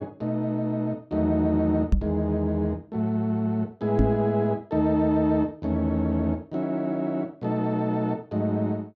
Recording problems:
microphone thump; at 2 s and at 4 s; peak +7 dB vs average level

